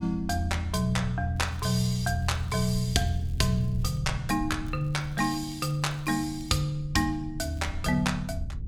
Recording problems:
low-frequency rumble; below 110 Hz, SNR 11 dB
crackling; from 1.5 to 4 s, from 4.5 to 6.5 s and at 7.5 s; loose cable, SNR 29 dB

